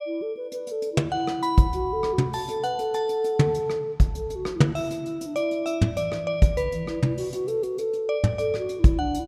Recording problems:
none

